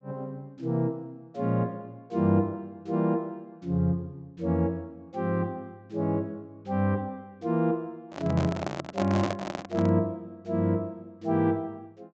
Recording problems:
low-pass filter; nothing above 8 kHz
microphone handling noise; from 8 to 10 s; peak +2 dB vs average level

